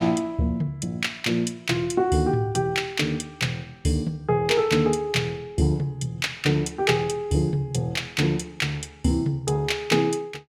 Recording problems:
none

